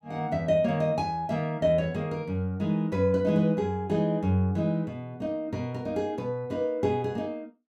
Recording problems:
none

